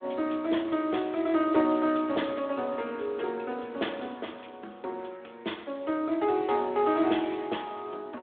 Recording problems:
phone line; 260 Hz to 3.5 kHz, Speex

